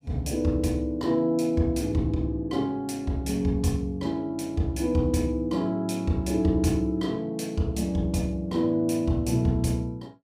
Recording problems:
none

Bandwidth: 15.5 kHz